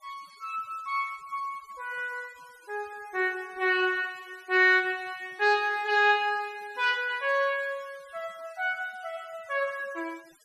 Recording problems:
noise reduction artefacts; signal-to-artefact ratio 26 dB

